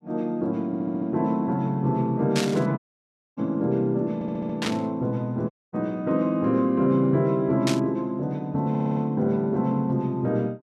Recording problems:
stutter; at 0.5 s, at 4 s and at 8.5 s
static burst; at 2.5 s, at 4.5 s and at 7.5 s; peak 0 dB vs average level
dropout; at 3 s for 0.5 s and at 5.5 s

